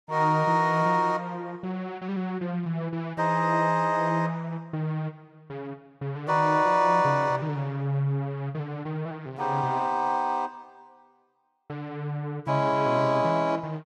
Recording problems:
none

